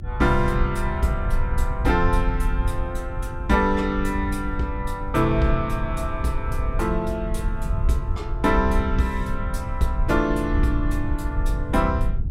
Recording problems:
electrical hum; 50 Hz, harmonics up to 400 Hz, SNR 19 dB
rumble; below 74 Hz, SNR 3 dB

